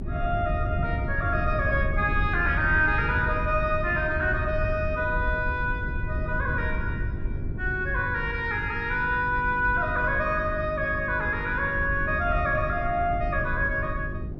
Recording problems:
hum; 50 Hz, harmonics up to 400 Hz, SNR 13 dB
wind on the microphone; below 110 Hz, SNR 6 dB

